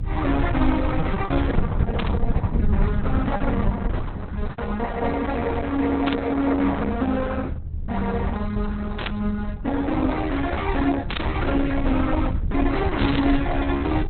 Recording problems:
codec artefacts; Opus, log-spectral distance 4 dB, nothing above 4 kHz
low-frequency rumble; below 92 Hz, SNR 3 dB
packet loss; 3% of the sound replaced, filled with repeated pitch periods
burst of static; 5 times, first at 2 s; peak +2 dB vs average level

